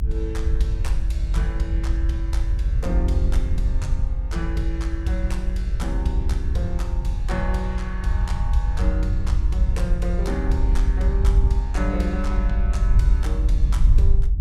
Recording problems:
rumble; below 64 Hz, SNR -7 dB

